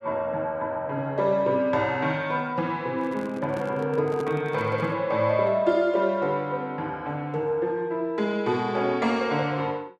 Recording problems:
microphone handling noise; from 3 to 5 s; peak -5 dB vs average level

